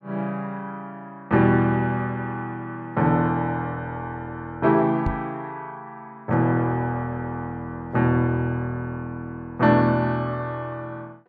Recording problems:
microphone bump; at 5 s; peak +1 dB vs average level

